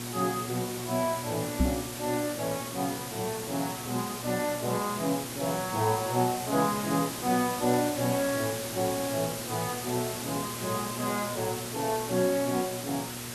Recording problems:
hum; 60 Hz, harmonics up to 1.1 kHz, SNR 12 dB
background hiss; slope -1 dB per octave, SNR 6 dB
microphone bump; at 1.5 s; peak +8 dB vs average level

